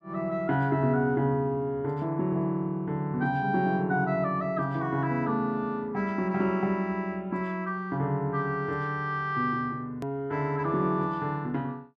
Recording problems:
click at an edit; at 10 s

